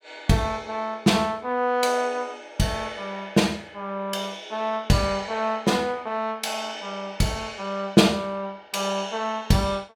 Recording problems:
none

